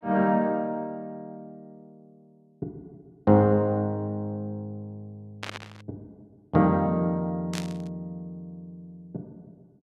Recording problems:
static burst; at 5.5 s and at 7.5 s; peak -4 dB vs average level

